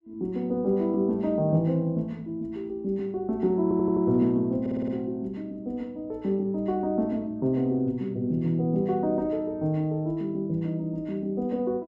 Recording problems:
stutter; at 3.5 s and at 4.5 s

